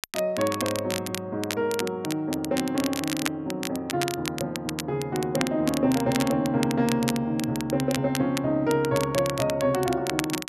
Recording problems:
crackle; vinyl, SNR 8 dB

